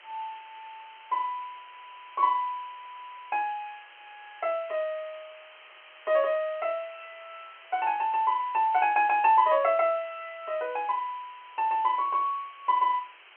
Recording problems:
phone line; 300 Hz to 3.3 kHz, G.711
background hiss; SNR 22 dB

